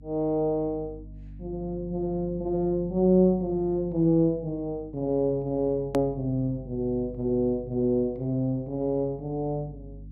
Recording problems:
hum; 50 Hz, harmonics up to 300 Hz, SNR 18 dB
click at an edit; at 6 s

